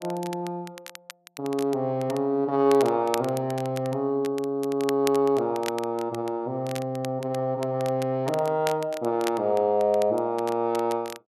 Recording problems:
crackling; vinyl, SNR 16 dB

